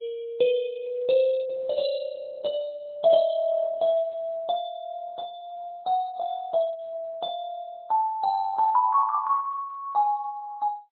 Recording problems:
codec artefacts; MP3, then Opus, log-spectral distance 2 dB, nothing above 4 kHz

